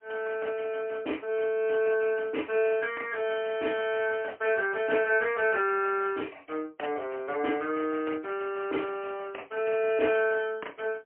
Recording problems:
telephone audio; 260 Hz to 3.1 kHz, AMR-NB, then MP3

